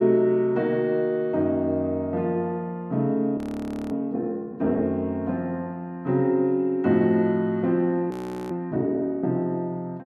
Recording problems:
frozen audio; at 3.5 s for 0.5 s and at 8 s

